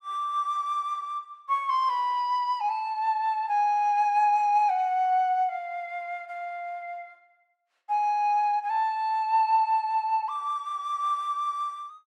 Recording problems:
none

